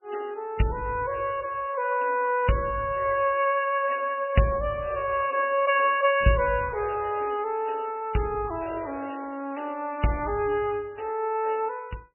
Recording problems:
lossy compression; MP3, log-spectral distance 6 dB, nothing above 2.7 kHz

